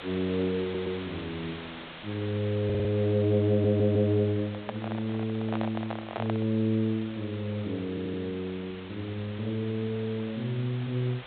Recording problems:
low-pass filter; nothing above 4 kHz
background hiss; SNR 15 dB
stutter; 4 times, first at 0.5 s
handling noise; from 4.5 to 6.5 s; peak -1 dB vs average level

